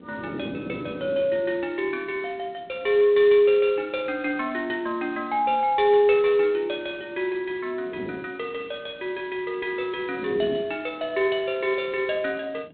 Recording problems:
phone line; 260 Hz to 3.7 kHz, G.726
wind on the microphone; below 400 Hz, SNR 16 dB

